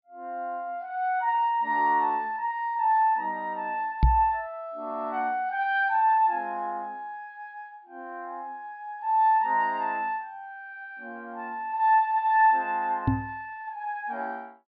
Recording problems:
treble missing; nothing above 5.5 kHz
microphone thump; at 4 s and at 13 s; peak +8 dB vs average level

